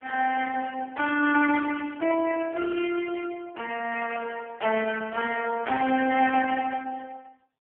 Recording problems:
phone line; 260 Hz to 2.7 kHz, AMR-NB
burst of static; at 2.5 s and at 4 s; peak -16 dB vs average level

